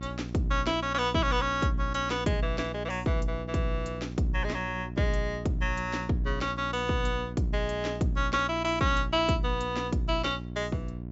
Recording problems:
treble cut off; nothing above 8 kHz
electrical hum; 60 Hz, harmonics up to 720 Hz, SNR 9 dB

